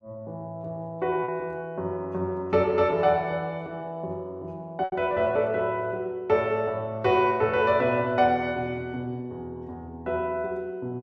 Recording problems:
packet loss; 1.1% of the sound replaced, filled with repeated pitch periods

